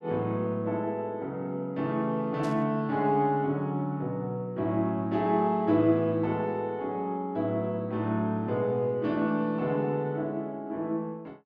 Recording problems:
burst of static; at 2.5 s; peak -13 dB vs average level

